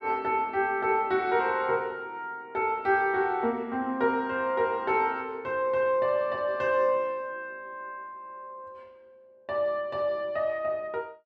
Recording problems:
none

